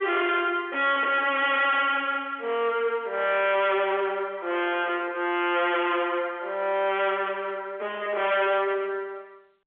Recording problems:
telephone audio; 340 Hz to 3.5 kHz, G.711
distortion; hard clipping, signal-to-distortion ratio 8 dB

